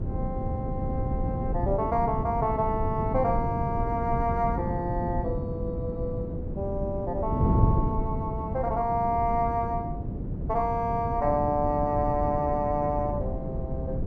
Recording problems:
wind on the microphone; below 210 Hz, SNR 2 dB

